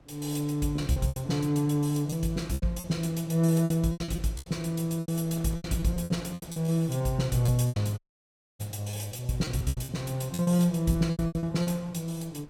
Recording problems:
wind noise; below 630 Hz, SNR 26 dB
packet loss; 14% of the sound replaced, filled with repeated pitch periods
audio cutting out; at 8 s for 0.5 s

